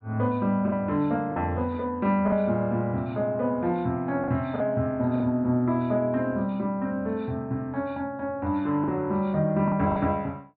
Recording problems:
treble missing; nothing above 4.6 kHz
lost packets; 3% of the sound replaced, filled with the last packet

